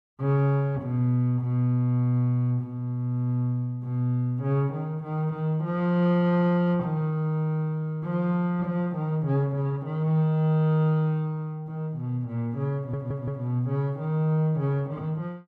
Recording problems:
stutter; at 13 s

